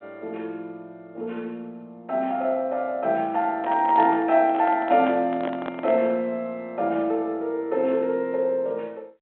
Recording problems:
telephone audio; 240 Hz to 3.6 kHz, G.726
handling noise; from 3.5 to 6 s; peak -4 dB vs average level

